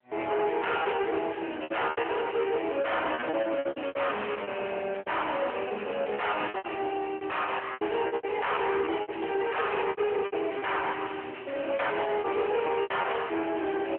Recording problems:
telephone audio; 280 Hz to 3.1 kHz, AMR-NB
distorted audio; soft clipping, signal-to-distortion ratio 6 dB
packet loss; 14% of the sound replaced, filled with repeated pitch periods

